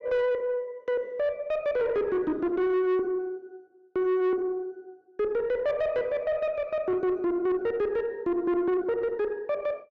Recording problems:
distorted audio; soft clipping, signal-to-distortion ratio 10 dB

